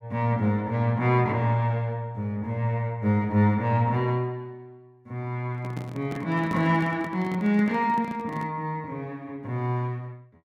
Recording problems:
handling noise; from 5.5 to 8.5 s; peak -3 dB vs average level

